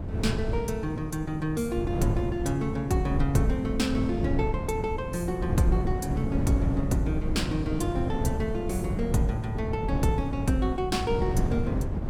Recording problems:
wind noise; below 180 Hz, SNR 2 dB

